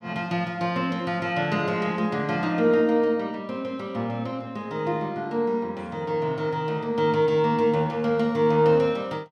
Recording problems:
none

